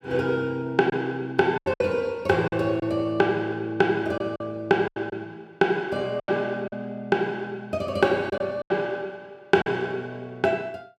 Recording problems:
packet loss; 6% of the sound replaced, filled with silence

